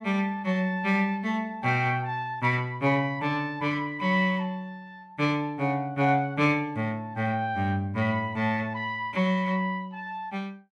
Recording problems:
none

